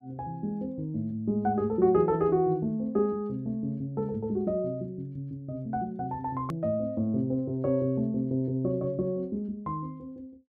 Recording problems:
hard cut with a click; at 6.5 s

